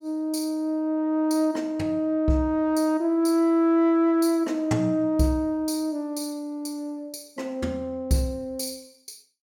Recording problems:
none

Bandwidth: 17.5 kHz